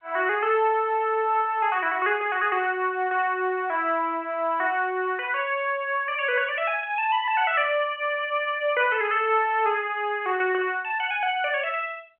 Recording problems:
phone line; 320 Hz to 3.3 kHz, G.711

